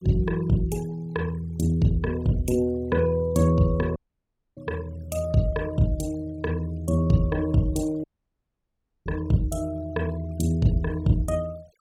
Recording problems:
noise reduction artefacts; signal-to-artefact ratio 24 dB
dropout; at 4 s for 0.5 s and at 8 s for 1 s

